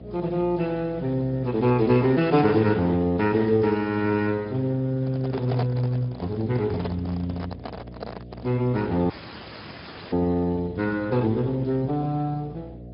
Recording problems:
treble cut off; nothing above 5.2 kHz
lossy compression; Speex, log-spectral distance 4 dB
electrical hum; 60 Hz, harmonics up to 720 Hz, SNR 18 dB
microphone handling noise; from 5 to 8.5 s; peak -2 dB vs average level
audio cutting out; at 9 s for 1 s

